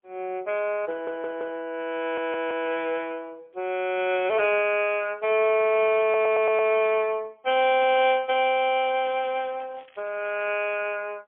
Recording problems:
telephone audio; 320 Hz to 3.4 kHz, AMR-NB, then MP3
stutter; at 1 s, at 2 s and at 6 s
crackling; from 8.5 to 10 s; loose cable, SNR 29 dB

